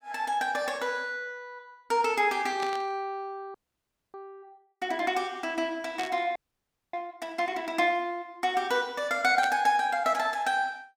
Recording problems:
static burst; at 2.5 s, at 6 s and at 9.5 s; peak -4 dB vs average level
audio freezing; at 3.5 s for 0.5 s and at 6.5 s for 0.5 s

